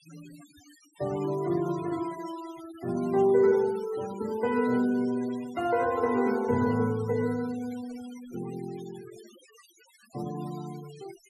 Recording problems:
denoising artefacts; signal-to-artefact ratio 20 dB

